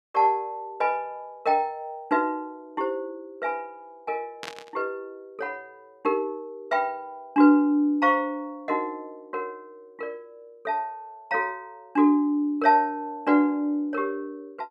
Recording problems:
static burst; at 4.5 s; peak -6 dB vs average level

